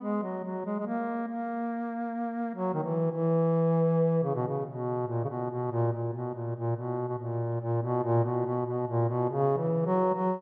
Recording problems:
none

